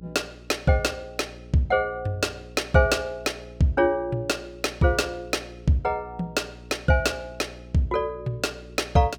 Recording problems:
hum; 60 Hz, harmonics up to 420 Hz, SNR 20 dB

